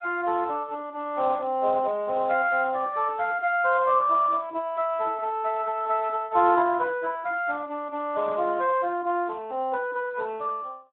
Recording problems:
phone line; 300 Hz to 2.9 kHz, Speex

